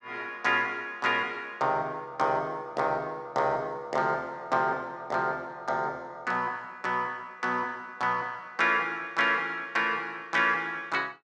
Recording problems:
none

